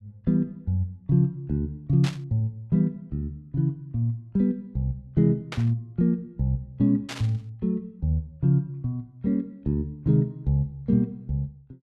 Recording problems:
static burst; at 2 s, at 5.5 s and at 7 s; peak -4 dB vs average level

